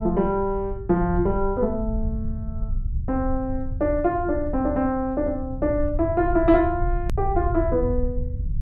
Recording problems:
low-frequency rumble; below 82 Hz, SNR 7 dB
click at an edit; at 7 s

